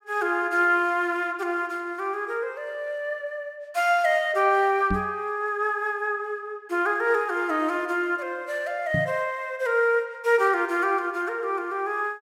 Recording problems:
microphone thump; at 5 s and at 9 s; peak +1 dB vs average level

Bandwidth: 16 kHz